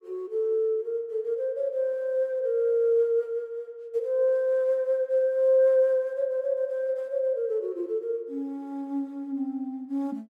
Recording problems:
none

